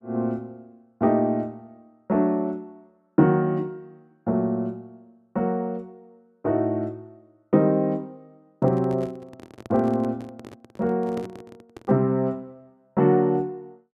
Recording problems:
microphone handling noise; from 8.5 to 12 s; peak -7 dB vs average level

